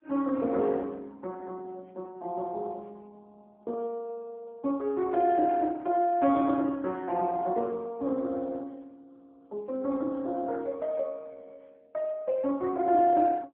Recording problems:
telephone audio; 220 Hz to 2.5 kHz, AMR-NB

